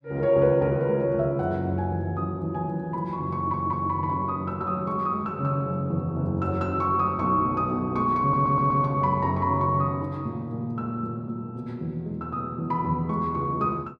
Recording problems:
stutter; at 3.5 s and at 8 s

